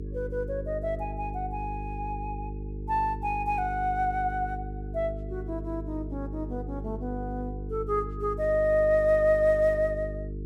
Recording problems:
electrical hum; 50 Hz, harmonics up to 450 Hz, SNR 8 dB

